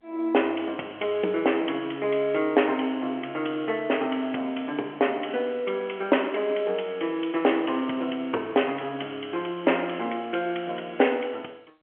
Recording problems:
phone line; 280 Hz to 3.3 kHz, G.711

